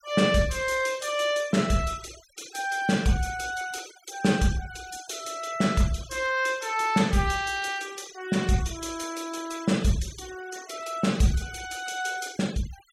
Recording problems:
noise reduction artefacts; signal-to-artefact ratio 18 dB

